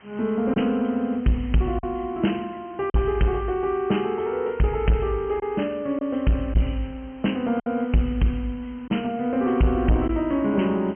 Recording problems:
treble cut off; nothing above 3.1 kHz
distorted audio; soft clipping, signal-to-distortion ratio 10 dB
background hiss; SNR 27 dB
packet loss; 2% of the sound replaced, filled with silence

